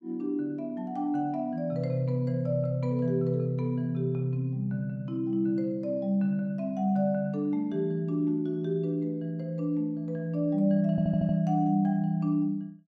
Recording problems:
audio stuttering; at 11 s

